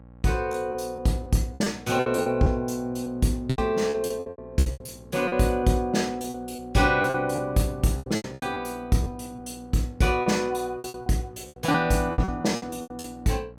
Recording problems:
electrical hum; 60 Hz, harmonics up to 1.1 kHz, SNR 22 dB
packet loss; 15% of the sound replaced, filled with repeated pitch periods

